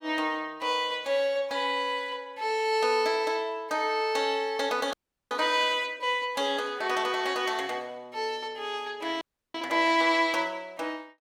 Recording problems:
audio freezing; at 5 s and at 9 s

